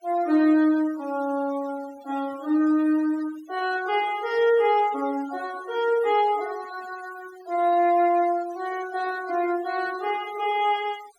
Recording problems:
noise reduction artefacts; signal-to-artefact ratio 21 dB

